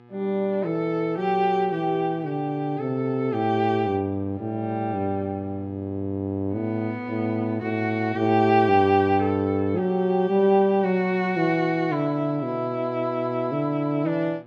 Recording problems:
electrical hum; 60 Hz, harmonics up to 2 kHz, SNR 25 dB

